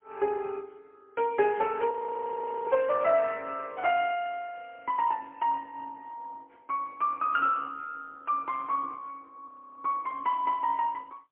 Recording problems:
telephone audio; 130 Hz to 3.3 kHz, AMR-NB, then MP3
audio freezing; at 2 s for 1 s and at 9.5 s

